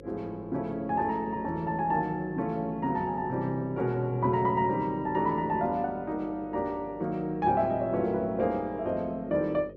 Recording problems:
electrical hum; 50 Hz, harmonics up to 550 Hz, SNR 17 dB

